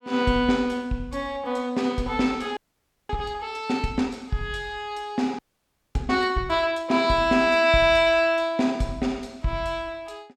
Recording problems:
frozen audio; at 2.5 s for 0.5 s and at 5.5 s for 0.5 s

